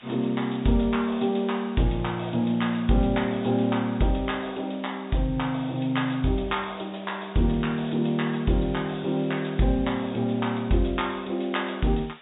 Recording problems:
treble cut off; nothing above 4 kHz
background hiss; SNR 23 dB

